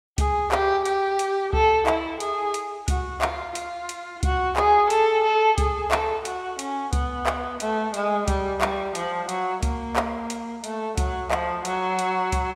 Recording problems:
none

